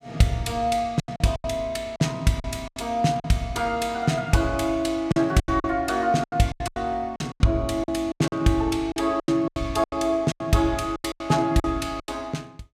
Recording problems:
lost packets; 14% of the sound replaced, filled with silence

